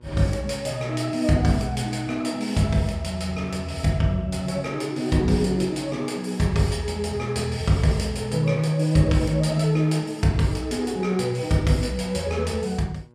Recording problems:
mains hum; 60 Hz, harmonics up to 1.6 kHz, SNR 26 dB

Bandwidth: 14.5 kHz